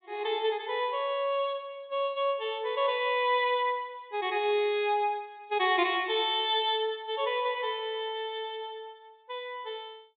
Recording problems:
low-pass filter; nothing above 4 kHz

